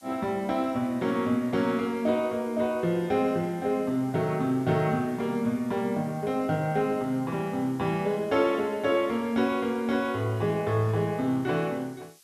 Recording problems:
background hiss; slope +3 dB per octave, SNR 27 dB

